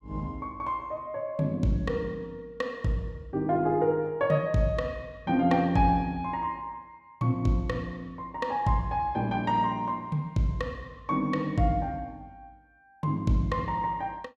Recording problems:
none

